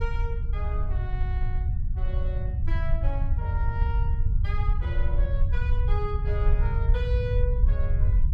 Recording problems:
low-frequency rumble; below 76 Hz, SNR -11 dB

